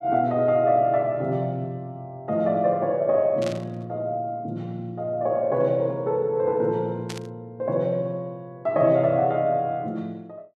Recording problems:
static burst; at 3.5 s and at 7 s; peak -7 dB vs average level

